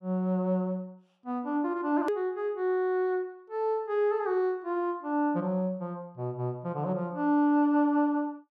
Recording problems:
hard cut with a click; at 2 s

